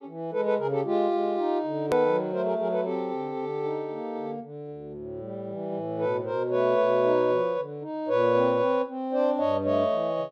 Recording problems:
edit click; at 2 s

